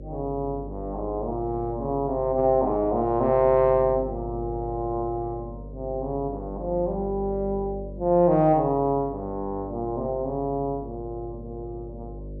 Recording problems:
hum; 50 Hz, harmonics up to 600 Hz, SNR 14 dB

